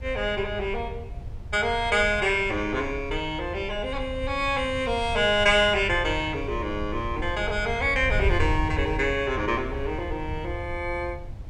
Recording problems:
wind on the microphone; below 94 Hz, SNR 9 dB

